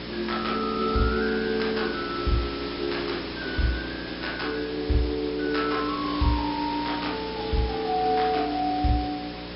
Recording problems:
treble missing; nothing above 5.3 kHz
hum; 60 Hz, harmonics up to 600 Hz, SNR 12 dB
background hiss; slope -2 dB per octave, SNR 9 dB

